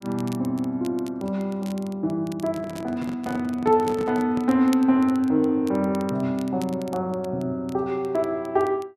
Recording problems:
crackling; vinyl, SNR 23 dB
handling noise; from 2.5 to 4.5 s; peak -4 dB vs average level

